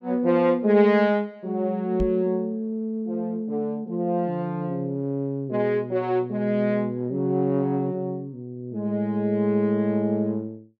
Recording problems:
knock on the microphone; at 2 s; peak +3 dB vs average level

